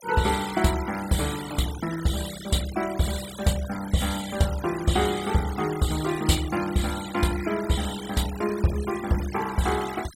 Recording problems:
denoising artefacts; signal-to-artefact ratio 12 dB

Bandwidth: 16 kHz